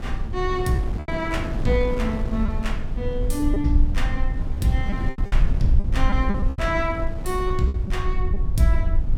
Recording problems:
hum; 50 Hz, harmonics up to 500 Hz, SNR 17 dB
rumble; below 58 Hz, SNR 1 dB
wind on the microphone; below 340 Hz, SNR 9 dB
packet loss; 8% of the sound replaced, filled with repeated pitch periods

